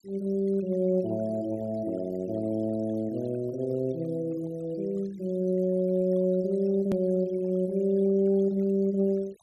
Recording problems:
noise reduction artefacts; signal-to-artefact ratio 27 dB
hard cut with a click; at 7 s

